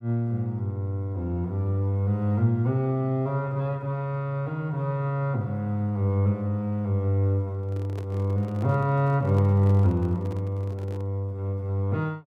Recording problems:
handling noise; from 7.5 to 11 s; peak -9 dB vs average level

